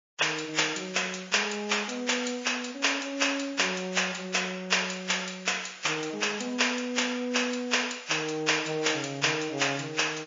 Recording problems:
lossy codec; MP3, log-spectral distance 7 dB

